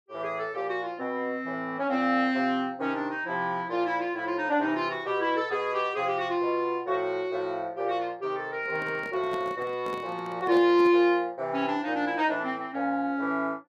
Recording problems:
microphone handling noise; from 8.5 to 11 s; peak -7 dB vs average level

